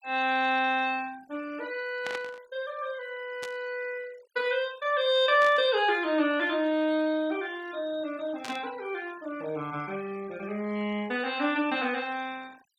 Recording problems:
denoising artefacts; signal-to-artefact ratio 22 dB
burst of static; 4 times, first at 2 s; peak -5 dB vs average level

